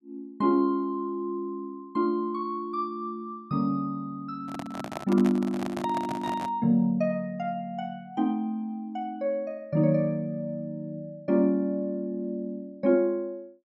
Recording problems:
handling noise; from 4.5 to 6.5 s; peak -2 dB vs average level

